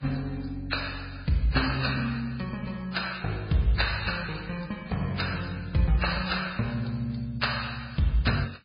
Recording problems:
codec artefacts; MP3, then MP3, log-spectral distance 6 dB, nothing above 4.9 kHz

